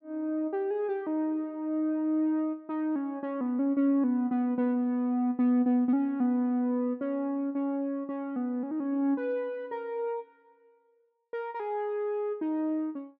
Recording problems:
none

